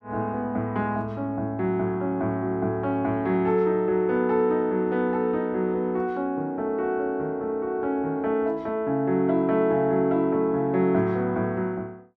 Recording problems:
none

